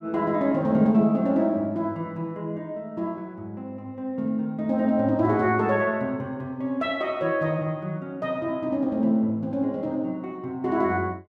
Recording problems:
none

